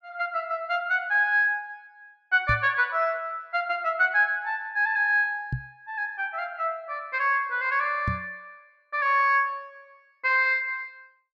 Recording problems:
knock on the microphone; at 2.5 s, at 5.5 s and at 8 s; peak -1 dB vs average level

